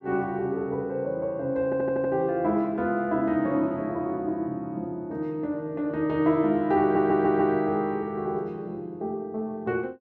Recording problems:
audio stuttering; at 1.5 s and at 7 s

